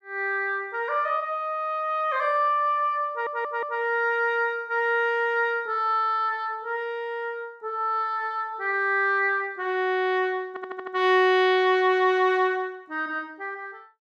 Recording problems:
audio stuttering; at 3 s and at 10 s

